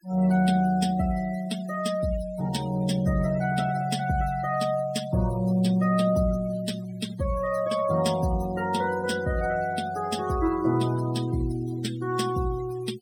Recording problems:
denoising artefacts; signal-to-artefact ratio 16 dB

